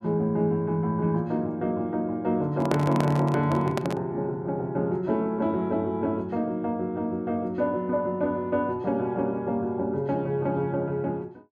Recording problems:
microphone handling noise; from 2.5 to 4 s; peak +2 dB vs average level

